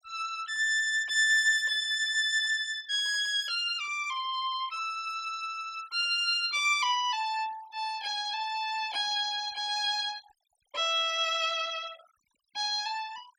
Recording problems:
noise reduction artefacts; signal-to-artefact ratio 21 dB

